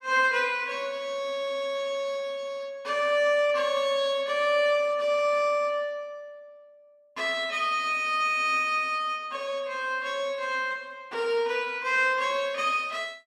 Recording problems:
none

